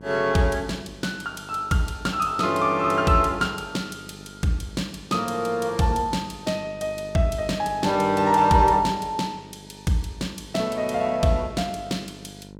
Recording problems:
electrical hum; 50 Hz, harmonics up to 1.1 kHz, SNR 21 dB

